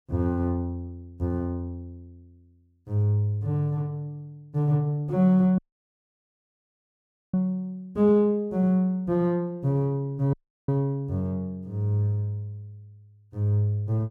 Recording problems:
dropout; at 5.5 s for 2 s and at 10 s

